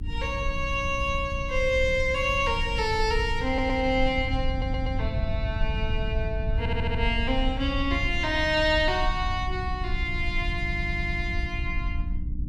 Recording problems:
hum; 60 Hz, harmonics up to 300 Hz, SNR 15 dB
rumble; below 80 Hz, SNR 5 dB
audio stuttering; 4 times, first at 3.5 s

